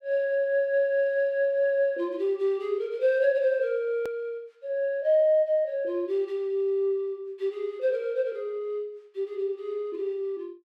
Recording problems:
hard cut with a click; at 4 s

